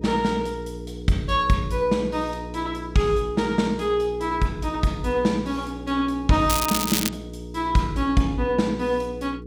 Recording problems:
hum; 60 Hz, harmonics up to 480 Hz, SNR 12 dB
crackle; at 6.5 s; loose cable, SNR 2 dB

